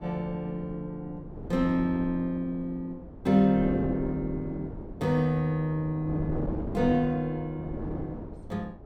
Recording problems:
wind on the microphone; below 380 Hz, SNR 10 dB

